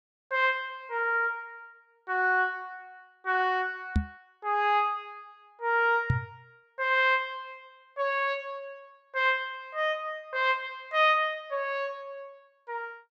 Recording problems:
microphone bump; at 4 s and at 6 s; peak +5 dB vs average level

